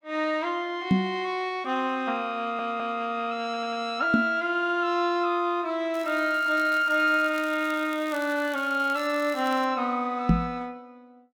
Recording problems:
microphone bump; at 1 s, at 4 s and at 10 s; peak +8 dB vs average level
stutter; at 2.5 s and at 3.5 s
crackling; from 6 to 9.5 s; loose cable, SNR 20 dB

